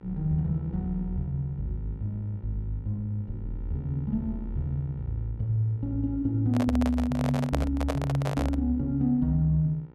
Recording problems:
hum; 60 Hz, harmonics up to 1.9 kHz, SNR 22 dB
handling noise; from 6.5 to 8.5 s; peak +3 dB vs average level

